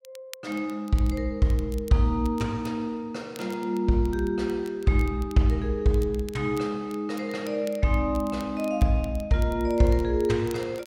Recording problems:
crackling; vinyl, SNR 24 dB

